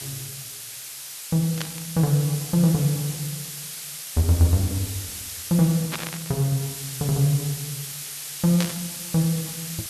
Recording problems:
background hiss; slope +3 dB per octave, SNR 8 dB
static burst; at 1.5 s, at 6 s and at 8.5 s; peak 0 dB vs average level

